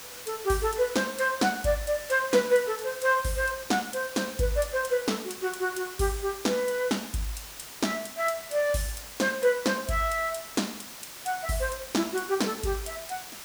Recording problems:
background hiss; slope 0 dB per octave, SNR 12 dB

